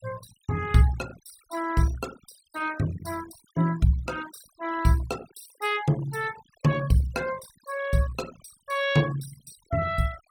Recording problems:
noise reduction artefacts; signal-to-artefact ratio 18 dB

